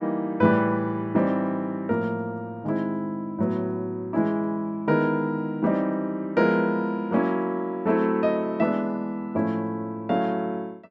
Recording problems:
none

